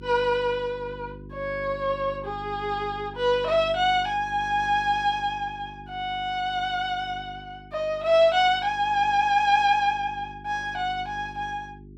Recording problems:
hum; 50 Hz, harmonics up to 400 Hz, SNR 19 dB

